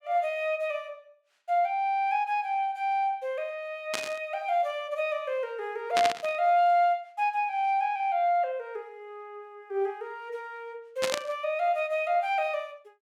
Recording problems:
burst of static; at 4 s, at 6 s and at 11 s; peak +3 dB vs average level

